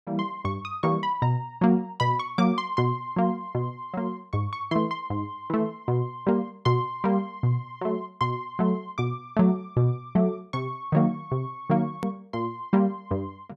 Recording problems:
edit click; at 12 s

